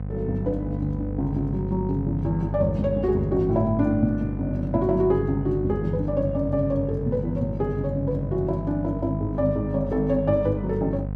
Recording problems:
hum; 50 Hz, harmonics up to 750 Hz, SNR 6 dB

